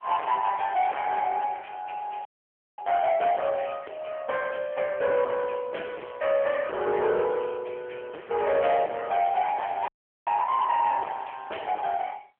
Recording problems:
phone line; 320 Hz to 3.4 kHz, AMR-NB
distorted audio; soft clipping, signal-to-distortion ratio 8 dB
frozen audio; at 2.5 s for 0.5 s and at 10 s

